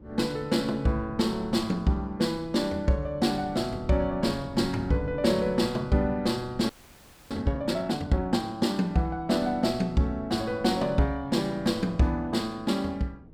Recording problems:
wind noise; below 250 Hz, SNR 18 dB
frozen audio; at 6.5 s for 0.5 s

